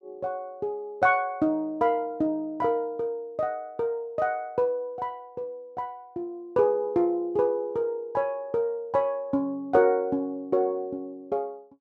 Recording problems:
none

